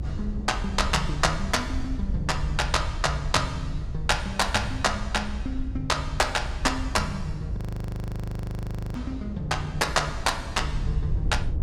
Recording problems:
low-frequency rumble; below 86 Hz, SNR 6 dB
wind on the microphone; below 310 Hz, SNR 16 dB
frozen audio; at 7.5 s for 1.5 s

